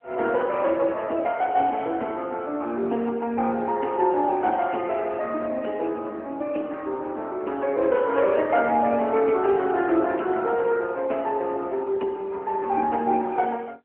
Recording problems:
telephone audio; 240 Hz to 3.2 kHz, AMR-NB

